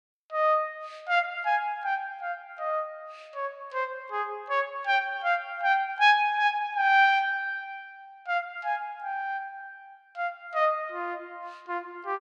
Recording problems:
none

